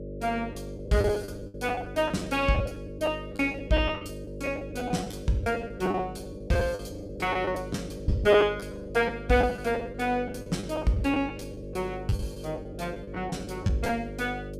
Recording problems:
mains hum; 50 Hz, harmonics up to 600 Hz, SNR 10 dB
packet loss; 13% of the sound replaced, filled with the last packet

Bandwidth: 14.5 kHz